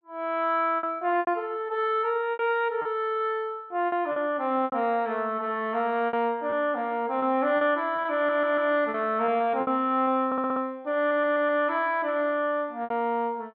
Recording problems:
treble cut off; nothing above 5.1 kHz
lost packets; 8% of the sound replaced, filled with repeated pitch periods
stutter; at 8 s, at 10 s and at 11 s

